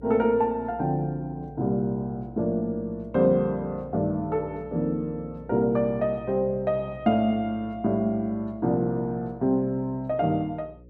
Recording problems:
hum; 60 Hz, harmonics up to 540 Hz, SNR 21 dB

